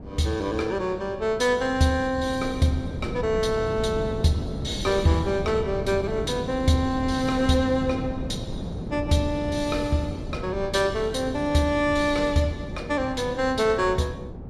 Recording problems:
wind on the microphone; below 290 Hz, SNR 9 dB

